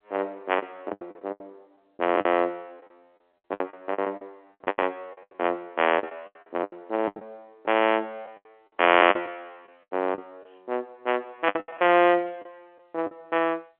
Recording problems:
phone line; 240 Hz to 3.4 kHz, G.711
lost packets; 13% of the sound replaced, filled with the last packet

